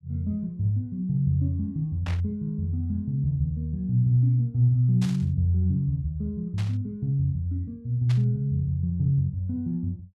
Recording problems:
static burst; 4 times, first at 2 s; peak -9 dB vs average level

